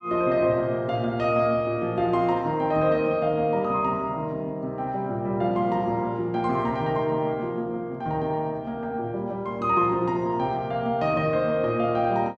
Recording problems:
none

